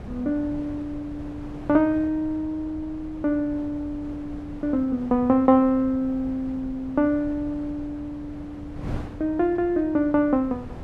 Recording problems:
wind on the microphone; below 300 Hz, SNR 15 dB

